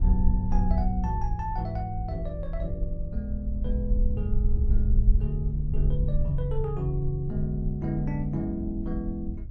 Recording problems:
wind on the microphone; below 60 Hz, SNR 0 dB

